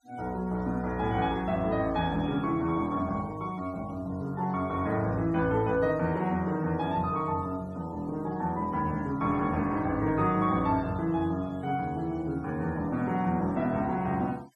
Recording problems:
denoising artefacts; signal-to-artefact ratio 27 dB

